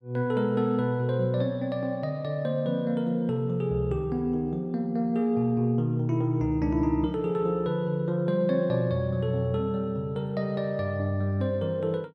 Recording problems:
none

